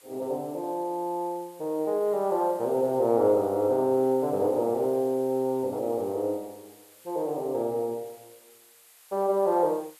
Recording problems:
hiss; SNR 25 dB

